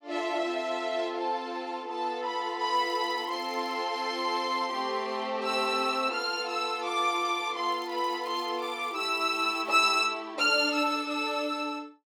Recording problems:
crackling; from 2.5 to 4 s and from 7.5 to 10 s; loose cable, SNR 29 dB

